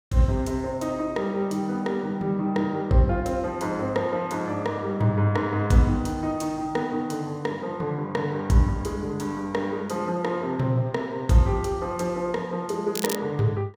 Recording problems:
crackling; at 13 s; loose cable, SNR 8 dB

